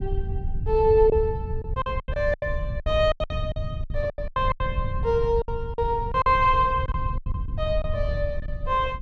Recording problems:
low-frequency rumble; below 88 Hz, SNR 6 dB
lost packets; 13% of the sound replaced, filled with silence

